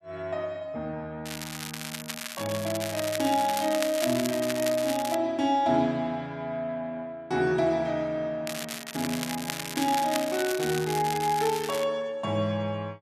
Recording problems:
crackle; from 1.5 to 5 s and from 8.5 to 12 s; loose cable, SNR 7 dB

